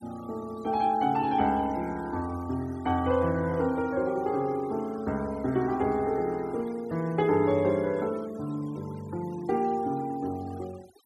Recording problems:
noise reduction artefacts; signal-to-artefact ratio 23 dB

